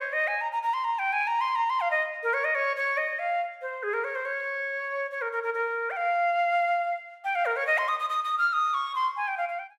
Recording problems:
none

